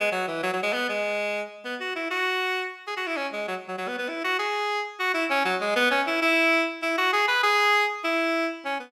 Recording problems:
none

